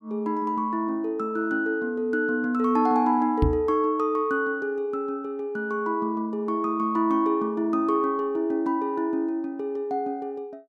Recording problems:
knock on the microphone; at 3.5 s; peak +6 dB vs average level

